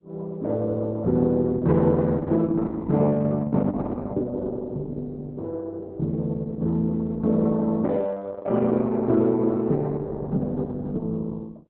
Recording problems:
codec artefacts; Opus, log-spectral distance 3 dB

